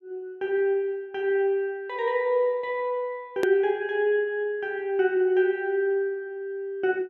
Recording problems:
click at an edit; at 3.5 s

